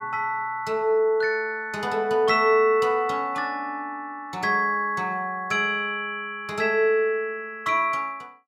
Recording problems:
none

